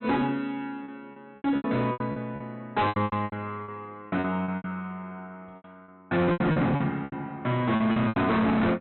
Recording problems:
treble cut off; nothing above 4 kHz
distortion; hard clipping, signal-to-distortion ratio 8 dB
lost packets; 15% of the sound replaced, filled with repeated pitch periods

